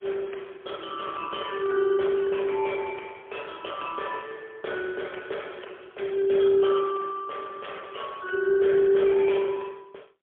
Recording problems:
phone line; 320 Hz to 3.5 kHz, AMR-NB, then MP3

